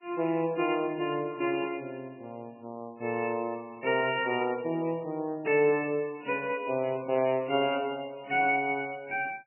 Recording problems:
codec artefacts; MP3, log-spectral distance 4 dB, nothing above 2.4 kHz

